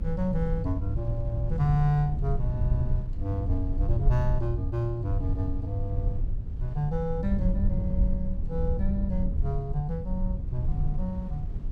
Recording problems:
rumble; below 80 Hz, SNR 0 dB
wind noise; below 90 Hz, SNR 18 dB

